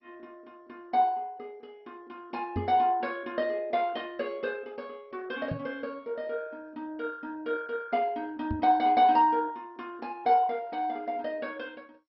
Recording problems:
lossy codec; MP2, log-spectral distance 2 dB, nothing above 5.3 kHz
microphone bump; at 2.5 s, at 5.5 s and at 8.5 s; peak 0 dB vs average level

